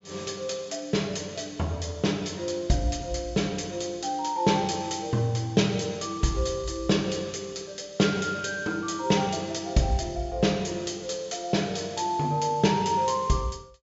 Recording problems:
treble missing; nothing above 8 kHz

